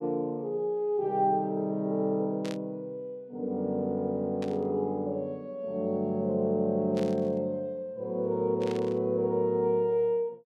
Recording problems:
static burst; 4 times, first at 2.5 s; peak -9 dB vs average level

